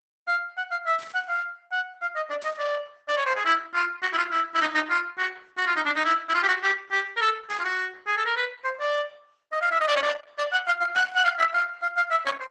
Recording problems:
lossy codec; Opus, log-spectral distance 4 dB, nothing above 11.6 kHz
static burst; 5 times, first at 1 s; peak -15 dB vs average level

